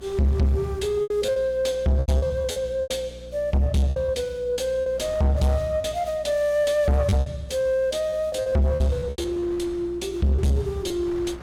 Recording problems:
distortion; soft clipping, signal-to-distortion ratio 8 dB
hum; 60 Hz, harmonics up to 660 Hz, SNR 20 dB
wind on the microphone; below 970 Hz, SNR 22 dB
lost packets; 10% of the sound replaced, filled with repeated pitch periods

